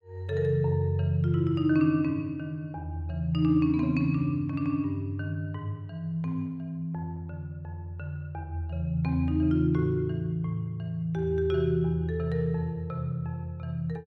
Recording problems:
none

